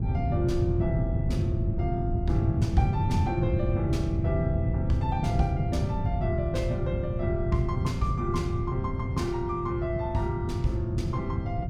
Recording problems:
wind noise; below 150 Hz, SNR -2 dB

